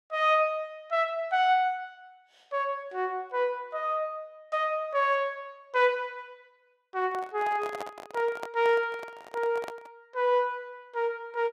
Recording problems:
microphone handling noise; from 7 to 10 s; peak -4 dB vs average level

